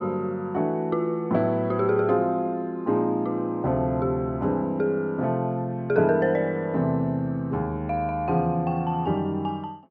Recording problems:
none

